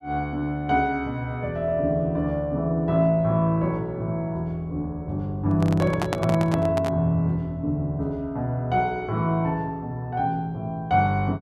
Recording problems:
handling noise; from 5.5 to 7 s; peak +2 dB vs average level

